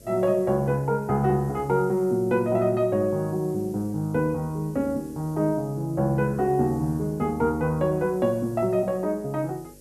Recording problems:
electrical hum; 50 Hz, harmonics up to 600 Hz, SNR 26 dB
background hiss; SNR 27 dB

